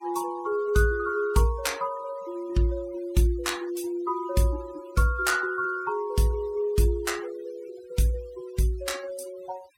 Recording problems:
noise reduction artefacts; signal-to-artefact ratio 22 dB

